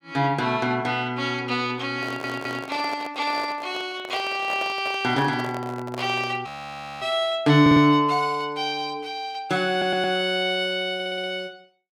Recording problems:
handling noise; from 2 to 6.5 s; peak -6 dB vs average level
stutter; 4 times, first at 2 s
frozen audio; at 6.5 s for 0.5 s

